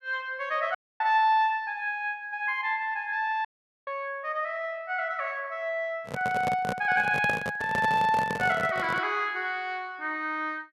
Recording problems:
dropout; at 1 s and at 3.5 s
microphone handling noise; from 6 to 9 s; peak -1 dB vs average level

